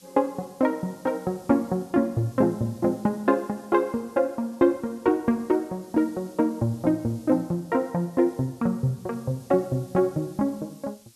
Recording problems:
hiss; SNR 27 dB

